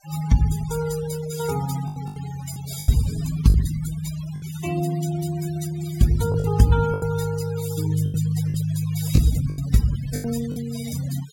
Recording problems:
noise reduction artefacts; signal-to-artefact ratio 15 dB
lost packets; 7% of the sound replaced, filled with the last packet

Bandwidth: 17 kHz